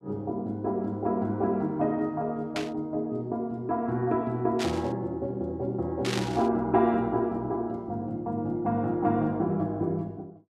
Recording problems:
burst of static; at 2.5 s, at 4.5 s and at 6 s; peak 0 dB vs average level

